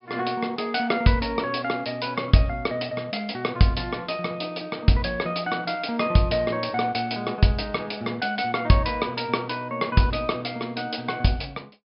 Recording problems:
treble cut off; nothing above 5.5 kHz

